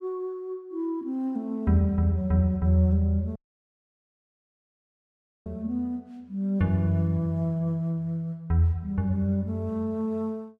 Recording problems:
dropout; at 3.5 s for 2 s

